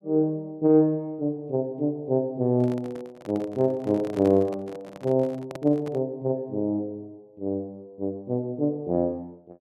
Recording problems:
handling noise; from 2.5 to 6 s; peak -7 dB vs average level

